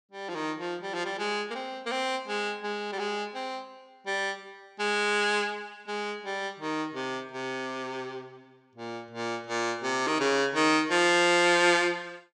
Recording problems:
none

